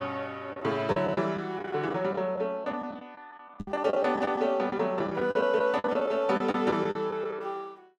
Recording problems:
lost packets; 12% of the sound replaced, filled with the last packet
knock on the microphone; at 3.5 s; peak -4 dB vs average level

